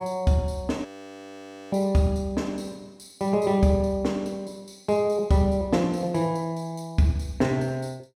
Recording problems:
frozen audio; at 1 s for 1 s

